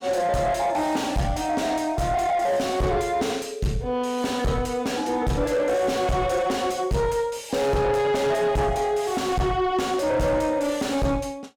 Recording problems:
distorted audio; soft clipping, signal-to-distortion ratio 7 dB

